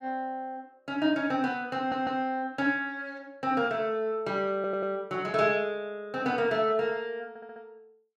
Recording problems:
stutter; at 2 s, at 4.5 s and at 7.5 s

